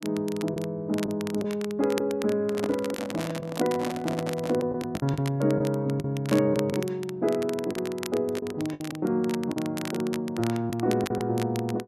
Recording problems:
crackling; vinyl, SNR 14 dB
lost packets; 6% of the sound replaced, filled with the last packet
handling noise; from 2.5 to 4.5 s; peak +1 dB vs average level

